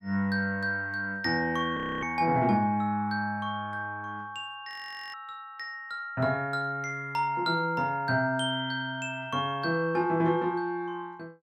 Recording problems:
audio freezing; at 2 s and at 4.5 s

